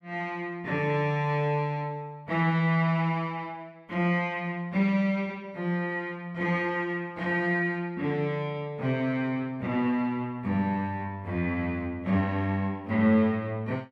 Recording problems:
none

